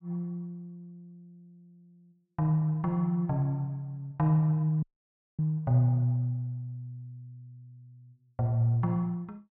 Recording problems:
audio cutting out; at 5 s for 0.5 s

